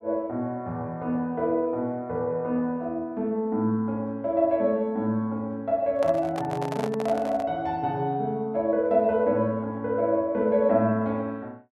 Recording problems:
handling noise; from 6 to 7.5 s; peak -3 dB vs average level

